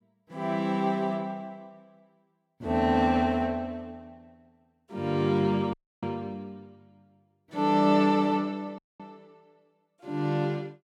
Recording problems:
audio cutting out; at 5.5 s and at 9 s

